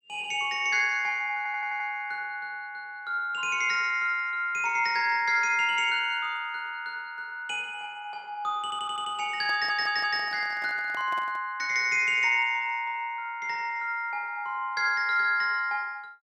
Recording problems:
audio stuttering; at 1.5 s, at 8.5 s and at 9.5 s
handling noise; from 9.5 to 11 s; peak -12 dB vs average level

